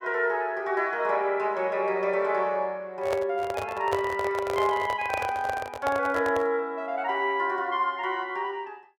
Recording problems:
microphone handling noise; from 3 to 6.5 s; peak +1 dB vs average level

